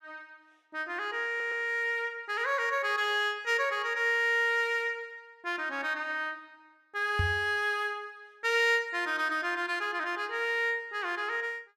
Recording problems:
audio stuttering; at 1.5 s
microphone thump; at 7 s; peak +2 dB vs average level

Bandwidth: 15 kHz